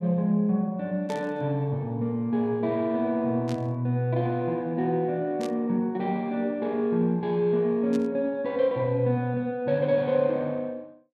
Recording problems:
static burst; 4 times, first at 1 s; peak -11 dB vs average level

